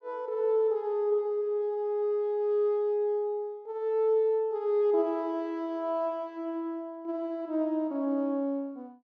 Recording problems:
none

